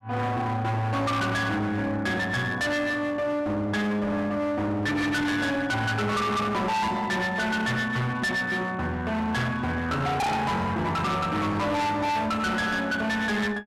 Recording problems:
distorted audio; hard clipping, signal-to-distortion ratio 6 dB

